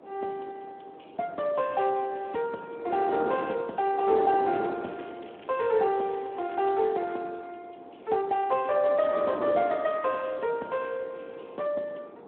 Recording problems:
telephone audio; 280 Hz to 3.2 kHz, Speex
wind on the microphone; below 670 Hz, SNR 13 dB
crackling; from 4 to 7 s; loose cable, SNR 27 dB

